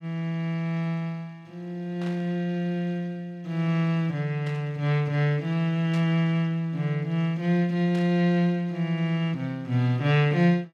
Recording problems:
static burst; 4 times, first at 2 s; peak -13 dB vs average level

